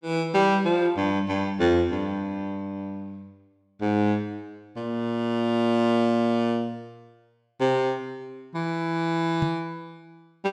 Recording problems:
microphone bump; at 9.5 s; peak +4 dB vs average level

